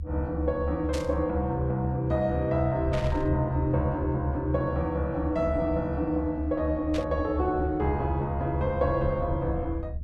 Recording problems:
rumble; below 76 Hz, strongest tone 70 Hz, SNR 6 dB
burst of static; at 1 s, at 3 s and at 7 s; peak -5 dB vs average level

